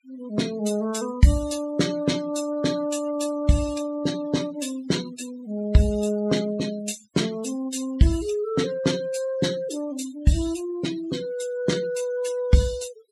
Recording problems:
noise reduction artefacts; signal-to-artefact ratio 15 dB

